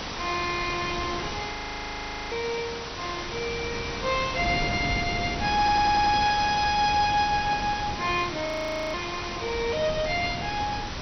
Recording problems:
lossy codec; MP2, log-spectral distance 16 dB, nothing above 5 kHz
hiss; slope -2 dB per octave, SNR 7 dB
wind on the microphone; below 350 Hz, SNR 10 dB
frozen audio; at 1.5 s for 1 s and at 8.5 s
audio stuttering; at 5.5 s

